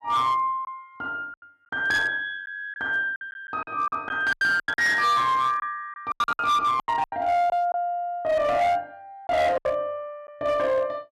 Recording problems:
distorted audio; hard clipping, uneven, signal-to-distortion ratio 11 dB
packet loss; 10% of the sound replaced, filled with silence

